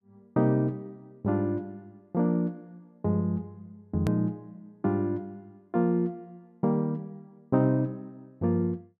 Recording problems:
click at an edit; at 4 s

